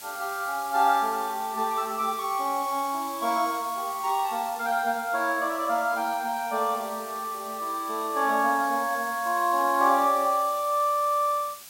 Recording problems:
background hiss; slope +2 dB per octave, SNR 15 dB

